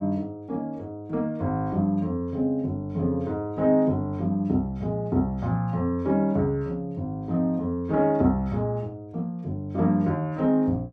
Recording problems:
none

